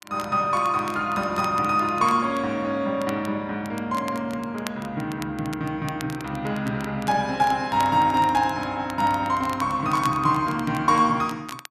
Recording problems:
crackle; vinyl, SNR 19 dB

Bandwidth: 13.5 kHz